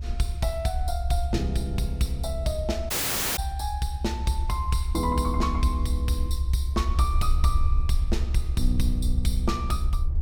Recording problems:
low-frequency rumble; below 68 Hz, SNR -1 dB
audio cutting out; at 3 s

